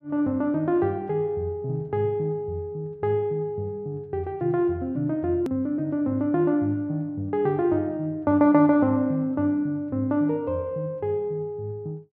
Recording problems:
hard cut with a click; at 5.5 s

